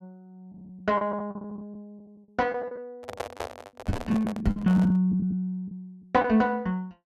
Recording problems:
lost packets; 12% of the sound replaced, filled with the last packet
handling noise; from 3 to 5 s; peak -1 dB vs average level

